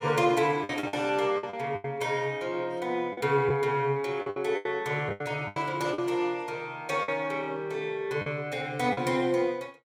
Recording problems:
packet loss; 9% of the sound replaced, filled with the last packet

